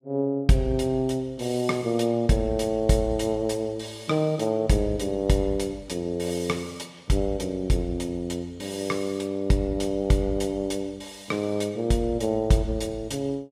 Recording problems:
none

